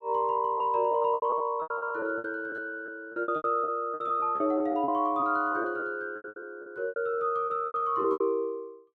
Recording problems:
lost packets; 18% of the sound replaced, filled with repeated pitch periods

